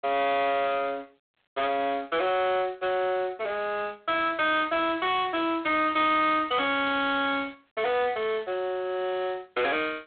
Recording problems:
phone line; 240 Hz to 3.6 kHz, G.726
distortion; soft clipping, signal-to-distortion ratio 7 dB

